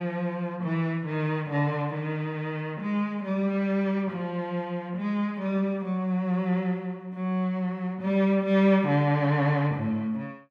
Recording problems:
none

